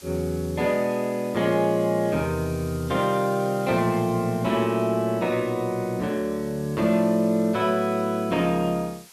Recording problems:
hiss; slope +1 dB per octave, SNR 22 dB

